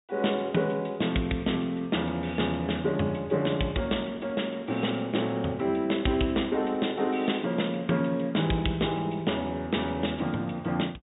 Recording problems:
treble cut off; nothing above 4 kHz

